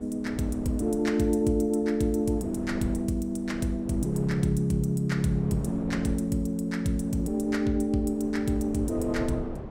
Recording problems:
wind on the microphone; below 400 Hz, SNR 13 dB

